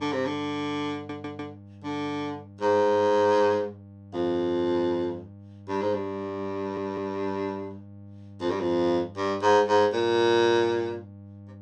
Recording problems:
hum; 50 Hz, harmonics up to 800 Hz, SNR 20 dB
stutter; at 1 s and at 6.5 s

